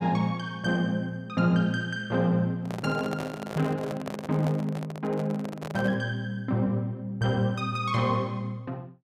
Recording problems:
microphone handling noise; from 2.5 to 6 s; peak -3 dB vs average level

